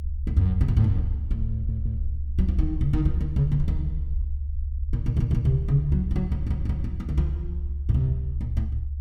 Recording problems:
rumble; below 72 Hz, strongest tone 70 Hz, SNR 4 dB
stutter; at 1.5 s, at 5 s and at 6.5 s

